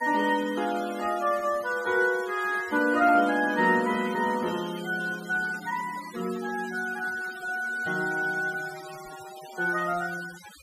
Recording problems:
denoising artefacts; signal-to-artefact ratio 17 dB

